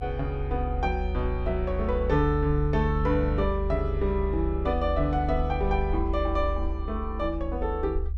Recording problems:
low-frequency rumble; below 72 Hz, strongest tone 44 Hz, SNR 3 dB

